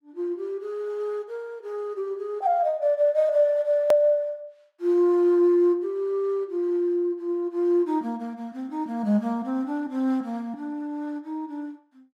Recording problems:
click at an edit; at 4 s

